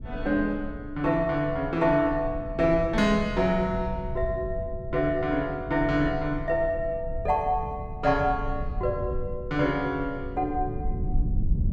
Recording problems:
low-frequency rumble; below 100 Hz, SNR 9 dB

